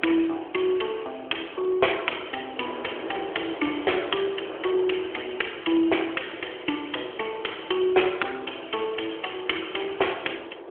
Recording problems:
telephone audio; 300 Hz to 3.4 kHz, AMR-NB
wind on the microphone; below 750 Hz, SNR 12 dB

